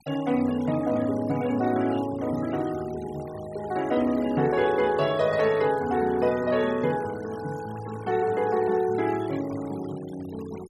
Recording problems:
noise reduction artefacts; signal-to-artefact ratio 19 dB

